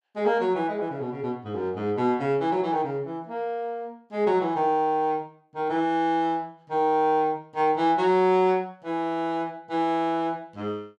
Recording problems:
none

